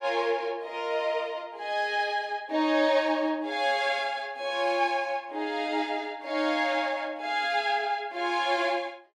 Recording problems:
none

